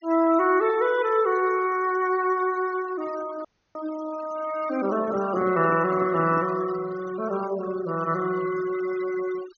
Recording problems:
treble cut off; nothing above 6.5 kHz
denoising artefacts; signal-to-artefact ratio 18 dB
dropout; at 3.5 s
handling noise; from 5 to 6.5 s; peak -8 dB vs average level

